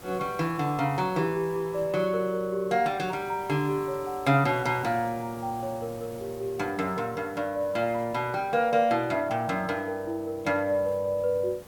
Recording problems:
hiss; slope -5 dB per octave, SNR 20 dB

